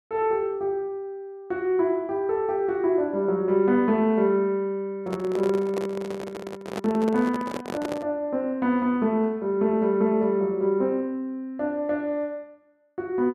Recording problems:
handling noise; from 5 to 8 s; peak -3 dB vs average level

